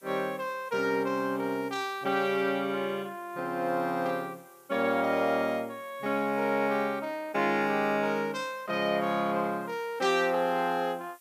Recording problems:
hiss; SNR 28 dB

